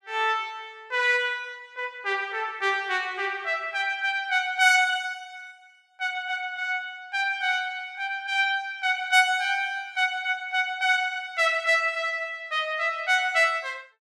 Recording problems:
none

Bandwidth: 15 kHz